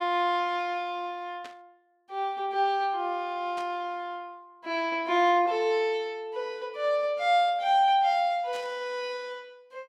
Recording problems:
burst of static; at 1.5 s, at 3.5 s and at 8.5 s; peak -12 dB vs average level

